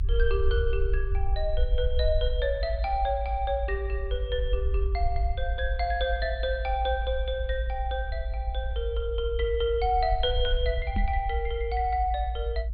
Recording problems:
treble missing; nothing above 4.5 kHz
rumble; below 58 Hz, SNR 1 dB
microphone thump; at 11 s; peak +6 dB vs average level

